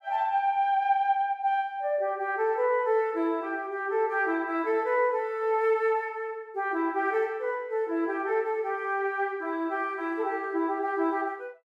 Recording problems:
none

